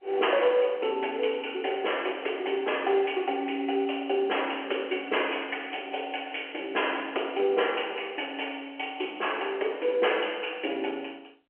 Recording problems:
phone line; 300 Hz to 3.1 kHz, G.711

